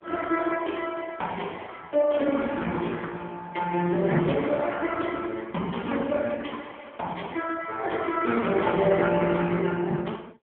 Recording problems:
telephone audio; 190 Hz to 3.1 kHz, AMR-NB

